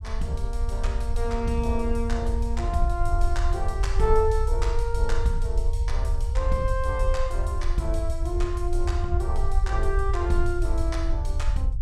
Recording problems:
rumble; below 62 Hz, SNR -2 dB

